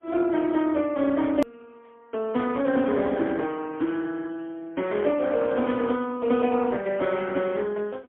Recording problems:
telephone audio; 220 Hz to 3.4 kHz, AMR-NB, then MP3
hard cut with a click; at 1.5 s

